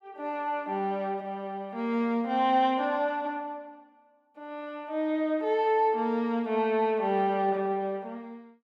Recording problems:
none

